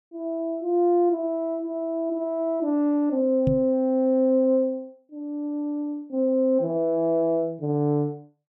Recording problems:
microphone thump; at 3.5 s; peak +3 dB vs average level

